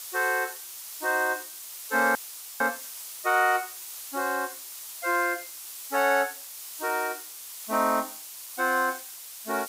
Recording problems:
hiss; slope +3 dB per octave, SNR 10 dB
audio cutting out; at 2 s

